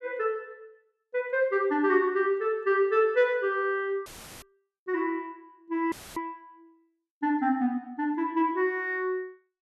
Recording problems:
audio cutting out; at 4 s and at 6 s; filled with static

